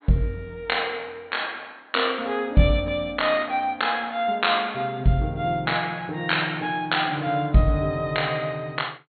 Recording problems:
treble missing; nothing above 4.4 kHz

